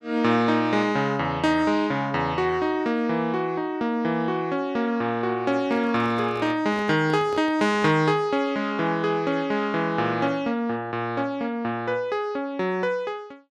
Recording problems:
handling noise; from 5.5 to 8 s; peak -11 dB vs average level

